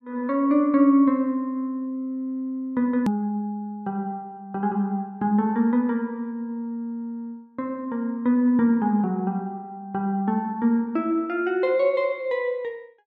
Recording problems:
hard cut with a click; at 3 s

